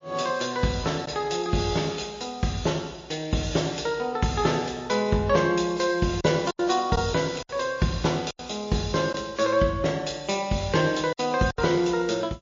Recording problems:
lossy compression; MP3, log-spectral distance 4 dB, nothing above 6.9 kHz
packet loss; 3% of the sound replaced, filled with silence

